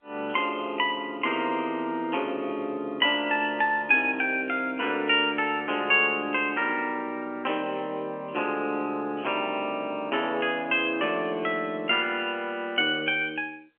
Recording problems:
telephone audio; 260 Hz to 3.2 kHz, G.711

